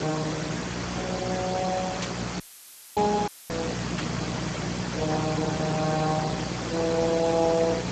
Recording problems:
codec artefacts; Speex, log-spectral distance 11 dB
electrical hum; 60 Hz, harmonics up to 480 Hz, SNR 5 dB
hiss; slope -4 dB per octave, SNR 4 dB
static burst; at 2 s and at 4 s; peak 0 dB vs average level
audio cutting out; at 2.5 s for 0.5 s and at 3.5 s; filled with static

